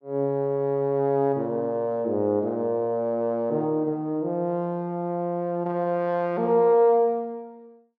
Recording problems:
none

